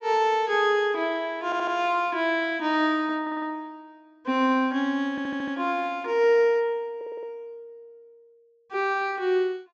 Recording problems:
low-pass filter; nothing above 8 kHz
stutter; 4 times, first at 1.5 s

